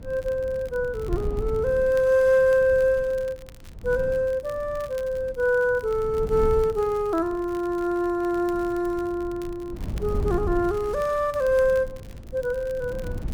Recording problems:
wind noise; below 130 Hz, SNR 13 dB
crackling; vinyl, SNR 27 dB

